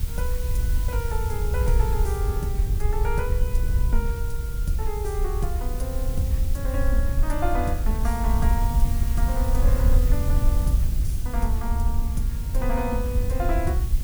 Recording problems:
hiss; slope +1 dB per octave, SNR 9 dB
wind noise; below 68 Hz, SNR -6 dB

